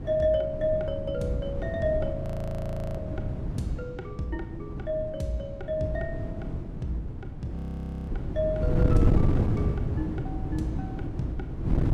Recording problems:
wind on the microphone; below 190 Hz, SNR -1 dB
frozen audio; at 2 s for 1 s and at 7.5 s for 0.5 s

